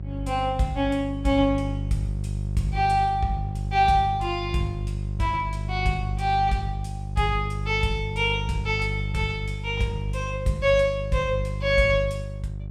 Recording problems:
electrical hum; 50 Hz, harmonics up to 400 Hz, SNR 5 dB

